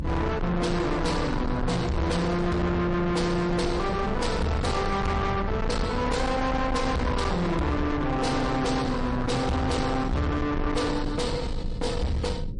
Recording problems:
lossy codec; MP3, log-spectral distance 2 dB, nothing above 10.4 kHz
distortion; soft clipping, signal-to-distortion ratio 6 dB
electrical hum; 60 Hz, harmonics up to 540 Hz, SNR 21 dB
low-frequency rumble; below 340 Hz, SNR 5 dB

